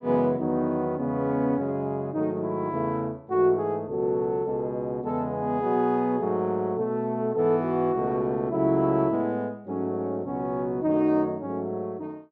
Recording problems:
treble missing; nothing above 7.5 kHz

